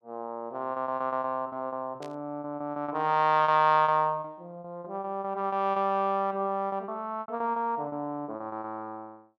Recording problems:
lost packets; 14% of the sound replaced, filled with repeated pitch periods
burst of static; at 2 s; peak -15 dB vs average level

